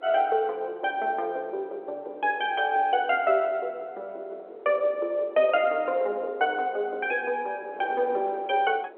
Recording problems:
phone line; 320 Hz to 3.3 kHz, G.711
wind noise; below 660 Hz, SNR 20 dB

